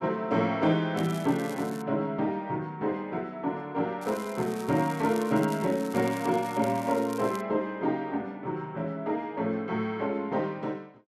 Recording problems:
crackle; at 1 s and from 4 to 7.5 s; loose cable, SNR 18 dB

